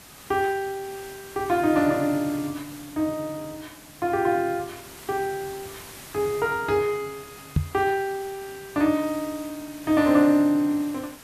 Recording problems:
hiss; slope -2 dB per octave, SNR 18 dB
microphone bump; at 7.5 s; peak +6 dB vs average level

